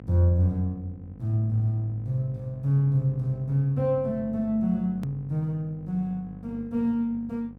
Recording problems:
hum; 50 Hz, harmonics up to 1 kHz, SNR 17 dB
hard cut with a click; at 5 s

